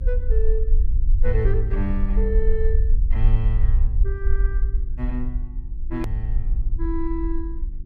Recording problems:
hum; 50 Hz, harmonics up to 350 Hz, SNR 15 dB
low-frequency rumble; below 48 Hz, strongest tone 20 Hz, SNR -6 dB
hard cut with a click; at 6 s

